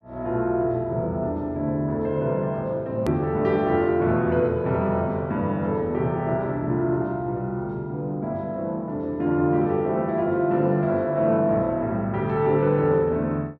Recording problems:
click at an edit; at 3 s

